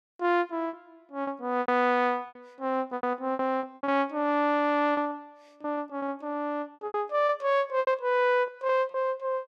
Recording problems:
lost packets; 12% of the sound replaced, filled with repeated pitch periods

